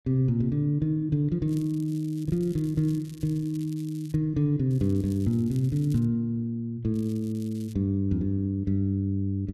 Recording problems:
crackle; from 1.5 to 4 s, from 4.5 to 6 s and at 7 s; loose cable, SNR 26 dB

